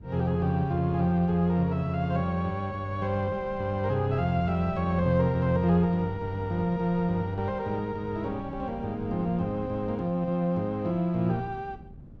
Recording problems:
wind on the microphone; below 210 Hz, SNR 17 dB

